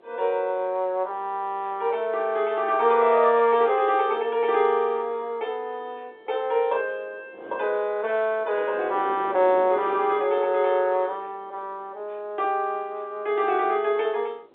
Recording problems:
phone line; 300 Hz to 3.8 kHz, G.711
wind on the microphone; below 660 Hz, SNR 17 dB

